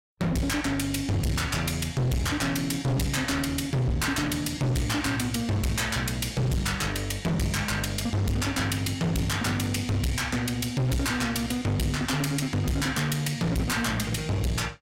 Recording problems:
distorted audio; hard clipping, uneven, signal-to-distortion ratio 5 dB

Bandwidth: 16 kHz